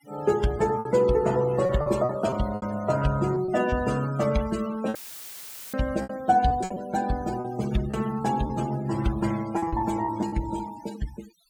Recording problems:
noise reduction artefacts; signal-to-artefact ratio 16 dB
lost packets; 8% of the sound replaced, filled with repeated pitch periods
audio cutting out; at 5 s for 1 s; filled with static

